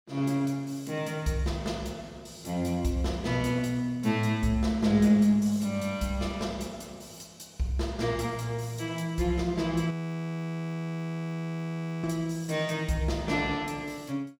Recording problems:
audio freezing; at 10 s for 2 s

